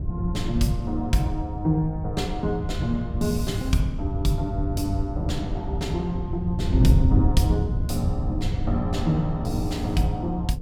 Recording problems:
wind on the microphone; below 120 Hz, SNR 1 dB

